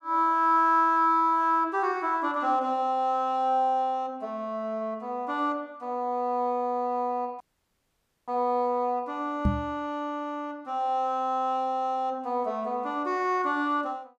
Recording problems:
audio cutting out; at 7.5 s for 1 s
knock on the microphone; at 9.5 s; peak +6 dB vs average level

